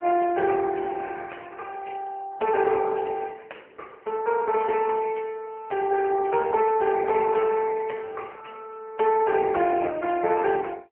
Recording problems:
phone line; 220 Hz to 3.1 kHz, AMR-NB

